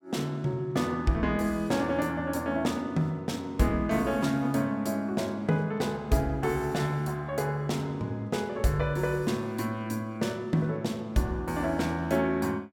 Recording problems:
none

